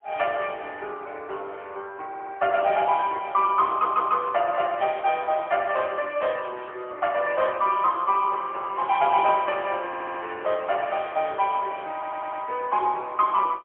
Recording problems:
telephone audio; 370 Hz to 3.2 kHz, AMR-NB, then MP3
audio stuttering; 4 times, first at 2 s

